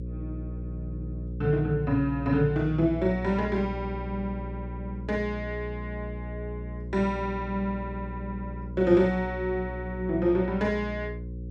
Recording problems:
electrical hum; 60 Hz, harmonics up to 540 Hz, SNR 8 dB

